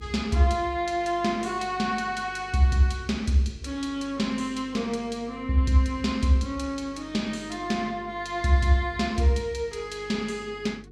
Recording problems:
hum; 50 Hz, harmonics up to 450 Hz, SNR 22 dB

